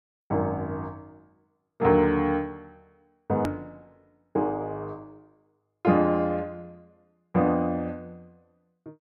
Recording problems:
edit click; at 3.5 s

